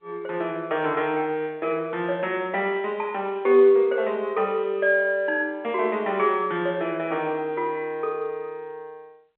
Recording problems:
phone line; 260 Hz to 3.7 kHz, G.711

